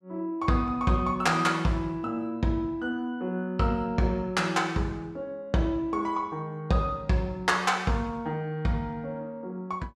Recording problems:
none

